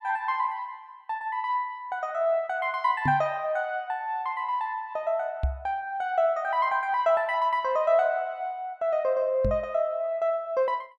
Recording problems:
microphone bump; at 3 s, at 5.5 s and at 9.5 s; peak +4 dB vs average level

